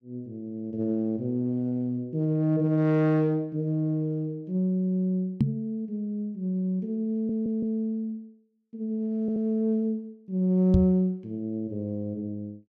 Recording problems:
microphone bump; at 5.5 s and at 11 s; peak +7 dB vs average level
audio stuttering; at 7 s and at 9 s

